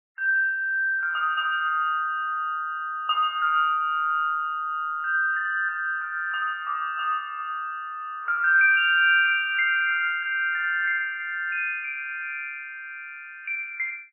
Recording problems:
lossy compression; MP3, log-spectral distance 2 dB, nothing above 2.5 kHz

